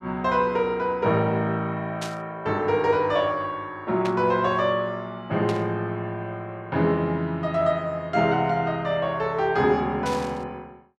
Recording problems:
burst of static; 4 times, first at 2 s; peak -5 dB vs average level

